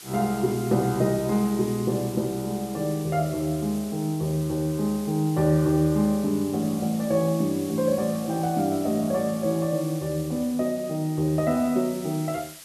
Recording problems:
hiss; slope +2 dB per octave, SNR 16 dB

